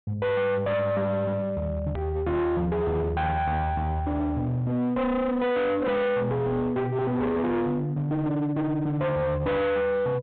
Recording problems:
treble cut off; nothing above 4 kHz
distorted audio; hard clipping, signal-to-distortion ratio 7 dB
click at an edit; at 2 s

